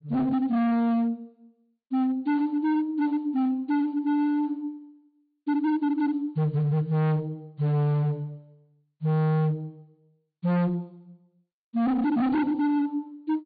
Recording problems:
low-pass filter; nothing above 4.6 kHz
distortion; hard clipping, signal-to-distortion ratio 6 dB

